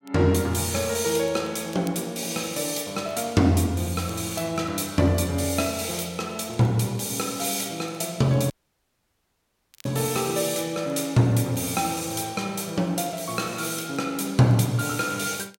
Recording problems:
crackling; vinyl, SNR 29 dB
audio cutting out; at 8.5 s for 1.5 s

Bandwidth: 16.5 kHz